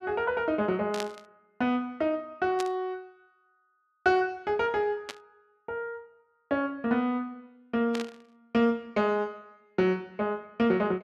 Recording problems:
burst of static; 4 times, first at 1 s; peak -2 dB vs average level

